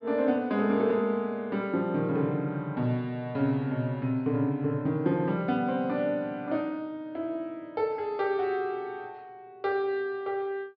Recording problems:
treble missing; nothing above 5.5 kHz

